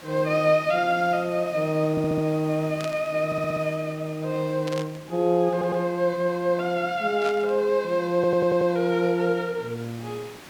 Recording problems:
background hiss; slope -4 dB per octave, SNR 21 dB
audio stuttering; 4 times, first at 2 s
burst of static; at 3 s, at 4.5 s and at 7 s; peak -8 dB vs average level

